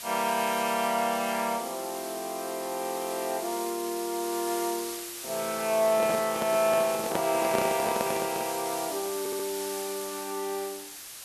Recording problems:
background hiss; slope +2 dB per octave, SNR 8 dB
handling noise; from 6 to 8.5 s; peak +3 dB vs average level
audio stuttering; at 9 s

